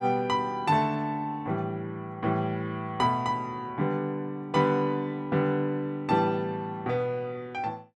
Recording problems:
none

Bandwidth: 12 kHz